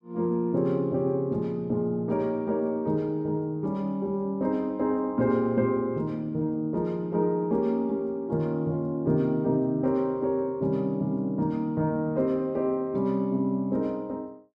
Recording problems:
none

